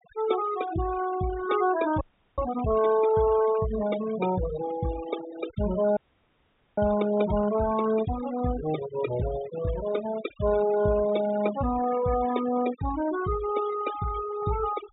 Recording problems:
treble cut off; nothing above 4 kHz
denoising artefacts; signal-to-artefact ratio 14 dB
audio freezing; at 2 s and at 6 s for 1 s

